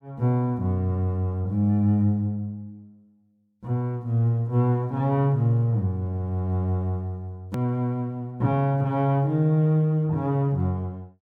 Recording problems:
edit click; at 7.5 s

